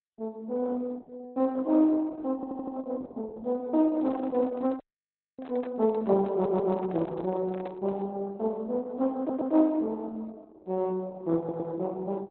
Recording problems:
codec artefacts; Opus, log-spectral distance 2 dB, nothing above 4 kHz
stutter; 4 times, first at 2.5 s
microphone handling noise; from 4 to 8 s; peak -12 dB vs average level
audio cutting out; at 5 s for 0.5 s

